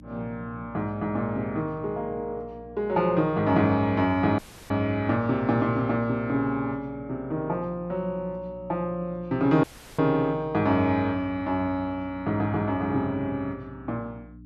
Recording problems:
electrical hum; 60 Hz, harmonics up to 300 Hz, SNR 21 dB
dropout; at 4.5 s and at 9.5 s

